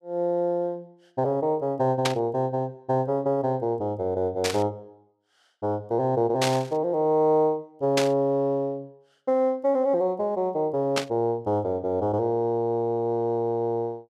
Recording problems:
burst of static; 5 times, first at 2 s; peak +4 dB vs average level

